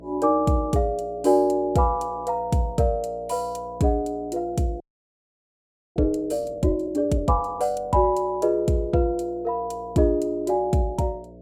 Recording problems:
hum; 60 Hz, harmonics up to 660 Hz, SNR 21 dB
audio freezing; at 5 s for 1 s

